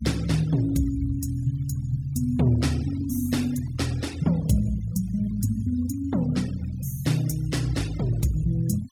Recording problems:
denoising artefacts; signal-to-artefact ratio 20 dB

